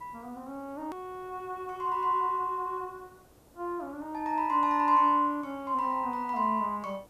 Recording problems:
background hiss; SNR 29 dB
click at an edit; at 1 s

